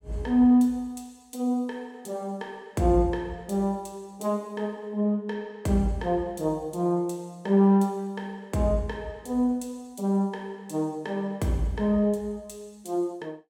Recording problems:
none

